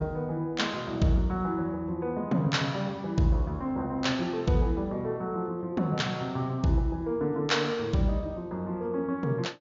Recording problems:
treble missing; nothing above 7.2 kHz

